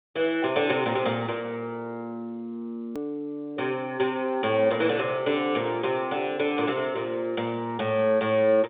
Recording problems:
telephone audio; 190 Hz to 3.7 kHz, G.711
hard cut with a click; at 3 s

